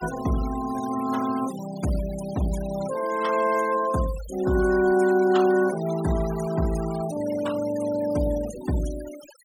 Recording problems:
noise reduction artefacts; signal-to-artefact ratio 16 dB

